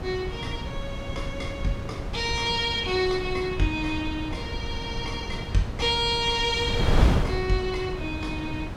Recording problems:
wind on the microphone; below 240 Hz, SNR 4 dB

